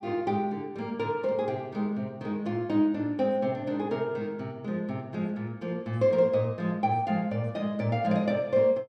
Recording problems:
none

